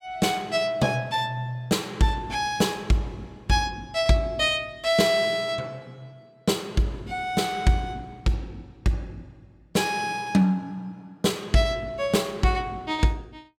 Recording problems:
none

